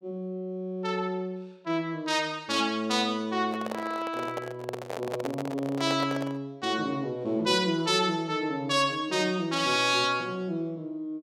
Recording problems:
microphone handling noise; from 3.5 to 6.5 s; peak -2 dB vs average level

